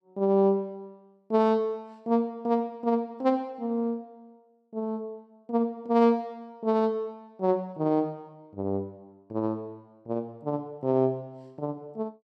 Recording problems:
none

